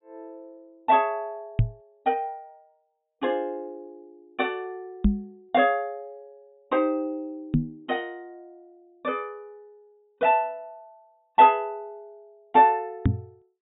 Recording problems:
treble cut off; nothing above 4 kHz
knock on the microphone; 4 times, first at 1.5 s; peak +7 dB vs average level

